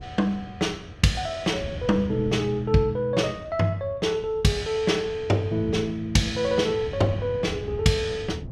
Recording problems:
wind noise; below 170 Hz, SNR 14 dB

